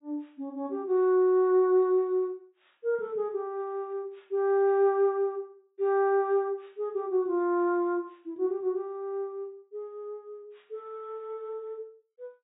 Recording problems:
low-pass filter; nothing above 4 kHz

